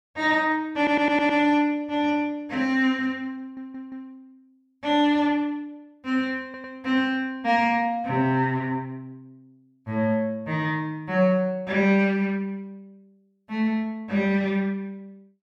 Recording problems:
stutter; at 1 s, at 3.5 s and at 6.5 s

